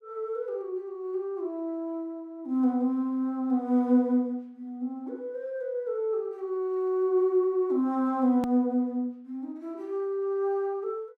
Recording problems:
edit click; at 8.5 s

